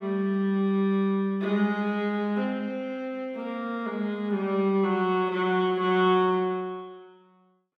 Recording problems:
none

